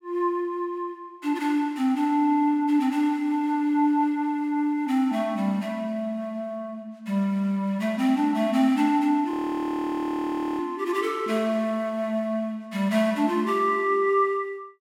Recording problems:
audio freezing; at 9.5 s for 1.5 s

